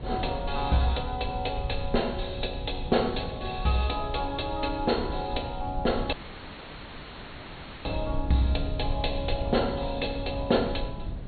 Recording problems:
treble cut off; nothing above 4.4 kHz
hiss; SNR 29 dB
rumble; below 98 Hz, SNR 8 dB
wind on the microphone; below 290 Hz, SNR 17 dB
audio cutting out; at 6 s for 1.5 s

